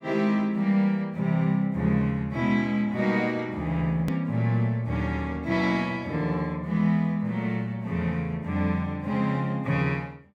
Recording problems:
hard cut with a click; at 4 s

